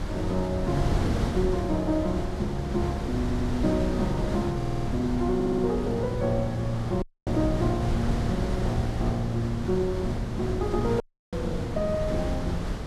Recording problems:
wind on the microphone; below 260 Hz, SNR 3 dB
audio stuttering; at 3 s, at 4.5 s and at 5.5 s
audio cutting out; at 7 s and at 11 s

